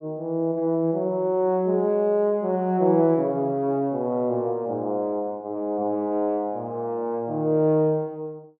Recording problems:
none

